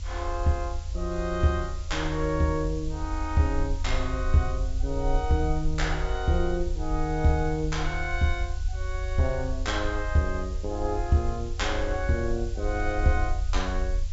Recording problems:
treble missing; nothing above 8 kHz
hiss; SNR 20 dB
low-frequency rumble; below 70 Hz, SNR 4 dB

